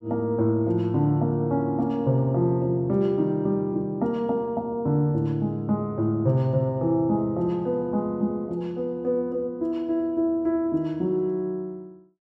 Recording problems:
none

